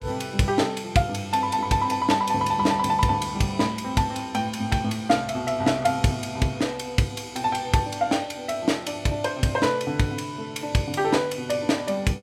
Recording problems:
none

